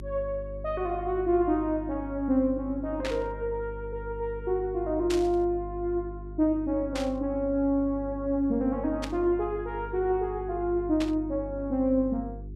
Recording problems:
hum; 50 Hz, harmonics up to 400 Hz, SNR 13 dB
burst of static; 5 times, first at 3 s; peak -2 dB vs average level

